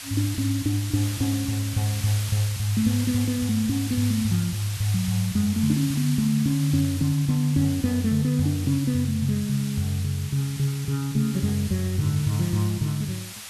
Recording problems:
hiss; slope +3 dB per octave, SNR 11 dB

